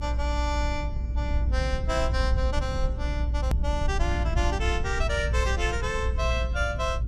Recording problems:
rumble; below 66 Hz, strongest tone 58 Hz, SNR -2 dB
click at an edit; at 3.5 s

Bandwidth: 14.5 kHz